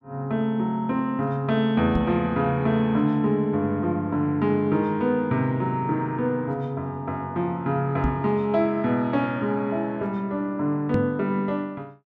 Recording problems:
microphone bump; at 2 s, at 8 s and at 11 s; peak +4 dB vs average level

